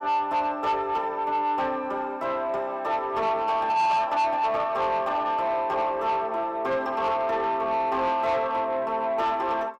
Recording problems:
distorted audio; soft clipping, signal-to-distortion ratio 12 dB

